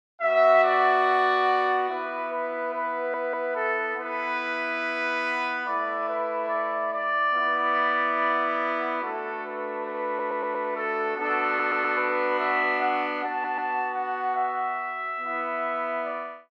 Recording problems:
stutter; 4 times, first at 3 s

